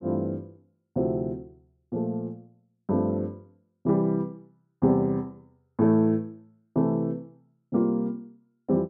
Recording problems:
none

